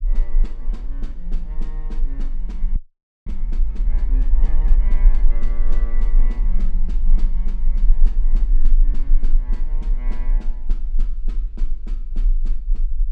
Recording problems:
low-frequency rumble; below 32 Hz, strongest tone 18 Hz, SNR -17 dB
audio freezing; at 3 s for 0.5 s

